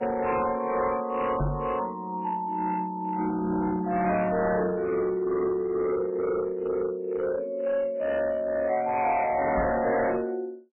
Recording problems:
lossy codec; MP3, log-spectral distance 3 dB, nothing above 2.5 kHz
distortion; hard clipping, uneven, signal-to-distortion ratio 7 dB
microphone bump; at 1.5 s and at 9.5 s; peak +2 dB vs average level

